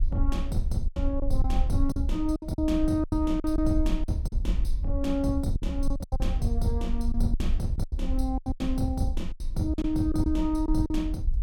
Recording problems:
rumble; below 54 Hz, strongest tone 22 Hz, SNR 2 dB
packet loss; 12% of the sound replaced, filled with silence

